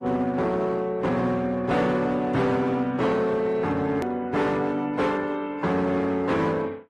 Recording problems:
codec artefacts; AAC, then Opus, log-spectral distance 2 dB, nothing above 13.1 kHz
distortion; hard clipping, signal-to-distortion ratio 11 dB
hard cut with a click; at 4 s

